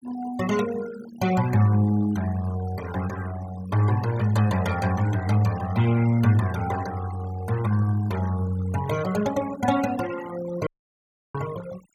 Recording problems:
noise reduction artefacts; signal-to-artefact ratio 15 dB
dropout; at 11 s for 0.5 s

